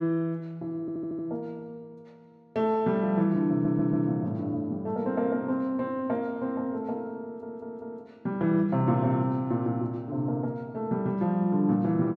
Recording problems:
stutter; at 1 s, at 3.5 s and at 7 s

